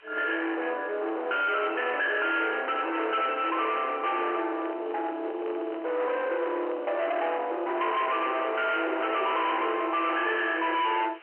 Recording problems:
phone line; 300 Hz to 3.3 kHz, G.711
distorted audio; soft clipping, signal-to-distortion ratio 6 dB
background hiss; SNR 24 dB
microphone handling noise; from 4 to 7.5 s; peak -7 dB vs average level

